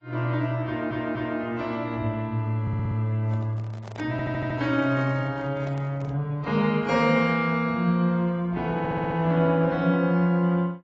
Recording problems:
codec artefacts; AAC, then AAC, log-spectral distance 2 dB
audio stuttering; 4 times, first at 0.5 s
microphone handling noise; from 3 to 6 s; peak -10 dB vs average level

